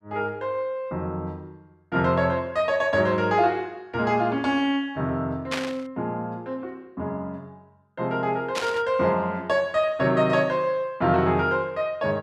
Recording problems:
burst of static; at 5.5 s and at 8.5 s; peak +1 dB vs average level

